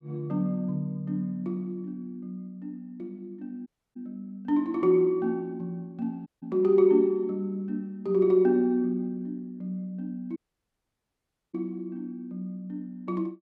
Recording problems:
dropout; at 3.5 s, at 6.5 s and at 10 s for 1 s

